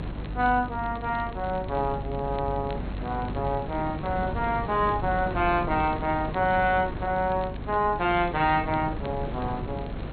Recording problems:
low-pass filter; nothing above 3.7 kHz
lossy codec; AAC, log-spectral distance 2 dB
electrical hum; 50 Hz, harmonics up to 300 Hz, SNR 12 dB
wind noise; below 460 Hz, SNR 10 dB
crackle; vinyl, SNR 25 dB

